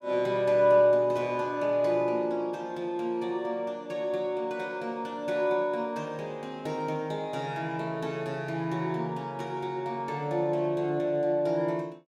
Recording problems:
none

